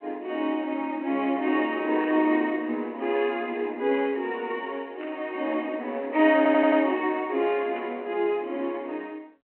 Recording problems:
phone line; 240 Hz to 3.1 kHz, G.726
static burst; at 2 s, at 5 s and at 8 s; peak -14 dB vs average level
stutter; at 6.5 s

